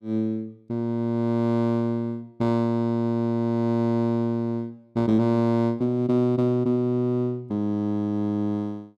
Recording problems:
none

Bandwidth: 13 kHz